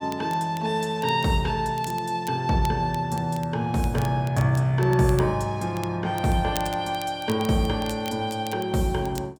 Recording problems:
crackle; vinyl, SNR 19 dB

